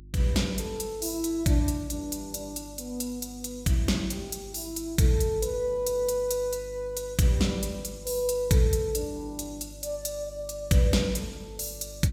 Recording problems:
hum; 50 Hz, harmonics up to 350 Hz, SNR 19 dB

